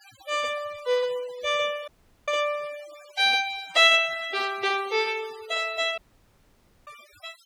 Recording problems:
noise reduction artefacts; signal-to-artefact ratio 22 dB
dropout; at 2 s and at 6 s for 1 s

